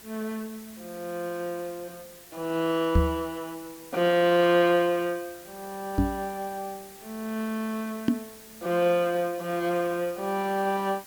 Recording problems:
hiss; slope -1 dB per octave, SNR 19 dB
microphone bump; at 3 s, at 6 s and at 8 s; peak +8 dB vs average level

